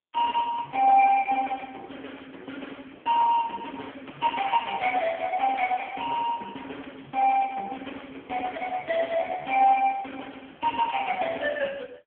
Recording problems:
telephone audio; 300 Hz to 3.3 kHz, AMR-NB

